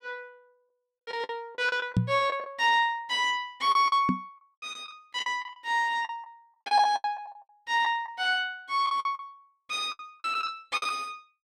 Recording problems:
packet loss; 13% of the sound replaced, filled with the last packet
microphone bump; at 2 s and at 4 s; peak +7 dB vs average level

